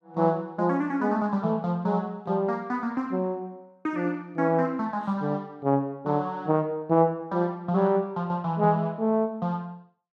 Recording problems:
none

